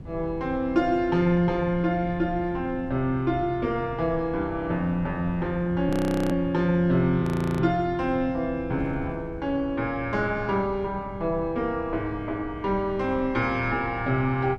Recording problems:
wind on the microphone; below 160 Hz, SNR 15 dB
audio freezing; at 6 s and at 7 s

